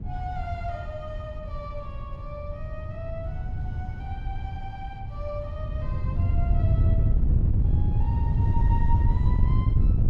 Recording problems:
wind noise; below 110 Hz, SNR -13 dB

